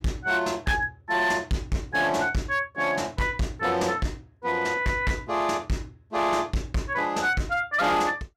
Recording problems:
distorted audio; hard clipping, signal-to-distortion ratio 11 dB

